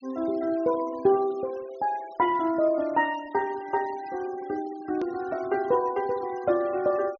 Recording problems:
treble cut off; nothing above 6.5 kHz
noise reduction artefacts; signal-to-artefact ratio 23 dB
hard cut with a click; at 5 s

